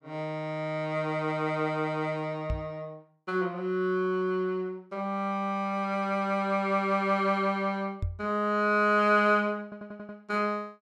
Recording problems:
microphone thump; at 2.5 s and at 8 s; peak 0 dB vs average level
stutter; at 9.5 s

